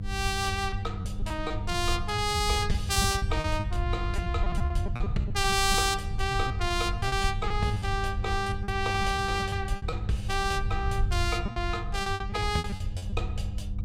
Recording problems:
electrical hum; 50 Hz, harmonics up to 500 Hz, SNR 10 dB
rumble; below 90 Hz, SNR 4 dB
lost packets; 13% of the sound replaced, filled with repeated pitch periods

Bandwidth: 17 kHz